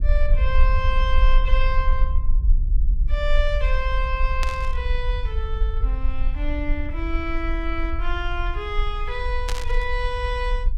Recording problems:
rumble; below 46 Hz, strongest tone 22 Hz, SNR -4 dB
burst of static; at 4.5 s and at 9.5 s; peak +3 dB vs average level

